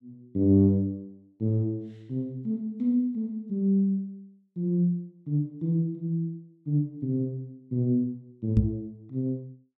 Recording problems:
knock on the microphone; at 8.5 s; peak +7 dB vs average level

